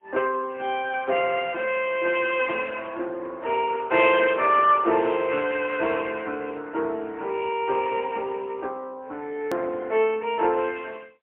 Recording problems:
telephone audio; 280 Hz to 3.1 kHz, AMR-NB, then MP3
edit click; at 9.5 s

